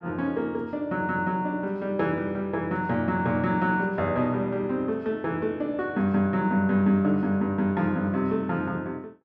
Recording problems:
none

